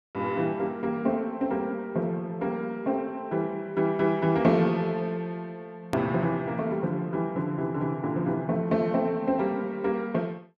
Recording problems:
click at an edit; at 6 s

